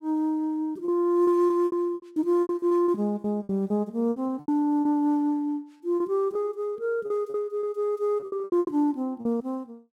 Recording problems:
lost packets; 12% of the sound replaced, filled with repeated pitch periods

